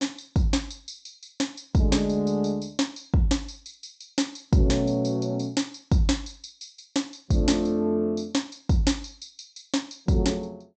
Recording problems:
low-pass filter; nothing above 8 kHz

